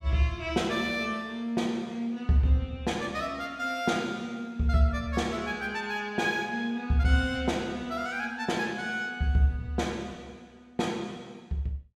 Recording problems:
none

